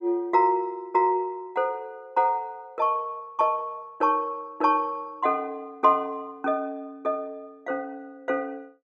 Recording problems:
none

